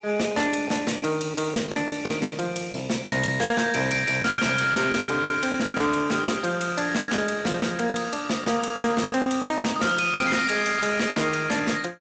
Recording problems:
lossy compression; Speex, log-spectral distance 7 dB, nothing above 7.8 kHz
distortion; hard clipping, signal-to-distortion ratio 10 dB
packet loss; 13% of the sound replaced, filled with the last packet

